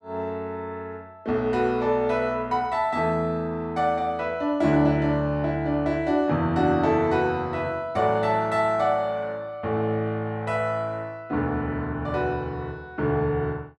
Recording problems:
none

